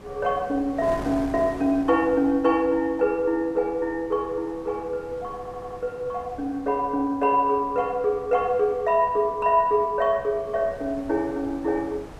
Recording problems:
wind on the microphone; below 810 Hz, SNR 19 dB
audio stuttering; at 5.5 s

